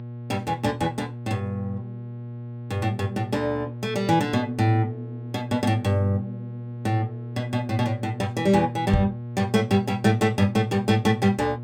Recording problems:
hum; 60 Hz, harmonics up to 840 Hz, SNR 10 dB
microphone bump; at 9 s; peak +5 dB vs average level

